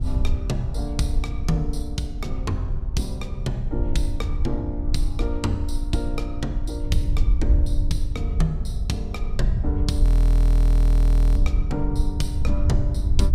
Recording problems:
wind noise; below 62 Hz, SNR -5 dB
audio freezing; at 10 s for 1.5 s

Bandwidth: 15.5 kHz